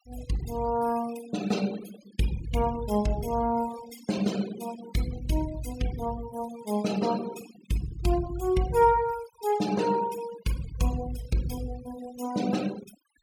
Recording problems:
denoising artefacts; signal-to-artefact ratio 14 dB

